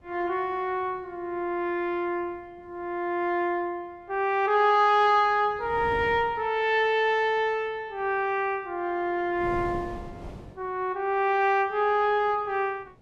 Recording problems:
wind noise; below 450 Hz, SNR 18 dB

